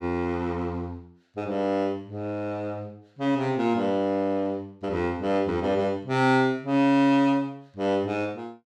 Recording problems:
none

